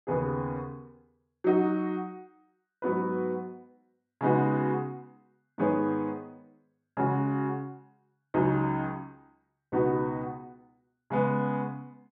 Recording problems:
none

